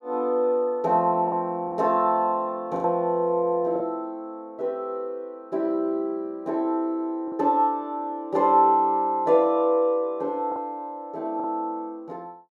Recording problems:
packet loss; 3% of the sound replaced, filled with the last packet

